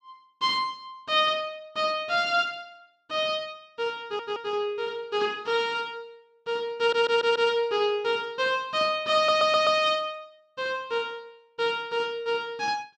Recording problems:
audio stuttering; at 4 s, at 7 s and at 9 s

